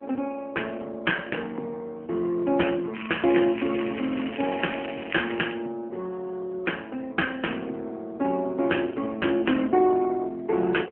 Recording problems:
telephone audio; 220 Hz to 3.1 kHz, AMR-NB
crackling; from 3 to 5.5 s; loose cable, SNR 10 dB

